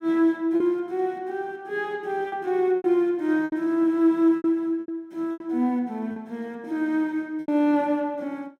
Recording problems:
lost packets; 7% of the sound replaced, filled with repeated pitch periods

